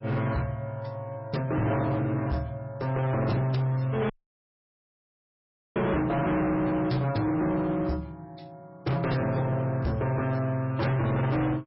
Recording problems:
lossy codec; MP3, log-spectral distance 2 dB, nothing above 5.3 kHz
distortion; hard clipping, signal-to-distortion ratio 7 dB
audio cutting out; at 4 s for 1.5 s

